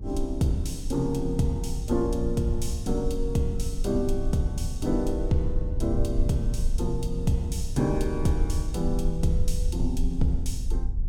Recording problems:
hum; 50 Hz, harmonics up to 500 Hz, SNR 24 dB
rumble; below 56 Hz, strongest tone 22 Hz, SNR 4 dB

